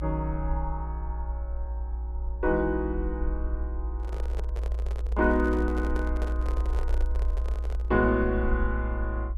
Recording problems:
rumble; below 60 Hz, strongest tone 58 Hz, SNR 2 dB
handling noise; from 4 to 8 s; peak -5 dB vs average level

